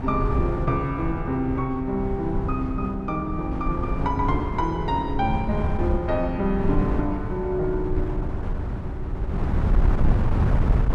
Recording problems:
wind noise; below 130 Hz, SNR 1 dB

